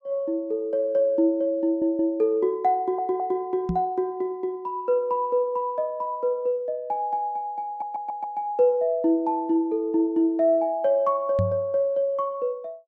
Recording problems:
stutter; at 1.5 s, at 3 s and at 7.5 s
knock on the microphone; at 3.5 s and at 11 s; peak +2 dB vs average level

